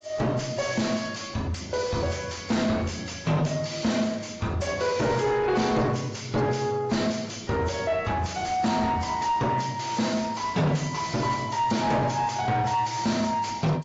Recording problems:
lossy codec; AAC, log-spectral distance 6 dB
distortion; soft clipping, signal-to-distortion ratio 7 dB

